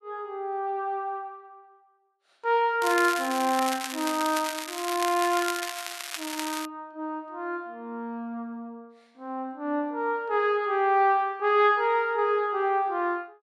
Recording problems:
crackling; from 3 to 6.5 s; loose cable, SNR 7 dB

